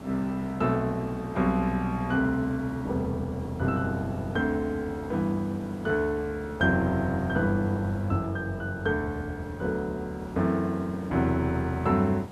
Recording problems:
background hiss; slope -8 dB per octave, SNR 16 dB

